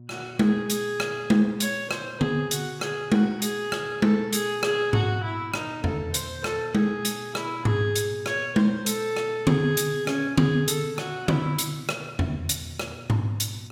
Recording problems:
hum; 60 Hz, harmonics up to 600 Hz, SNR 22 dB

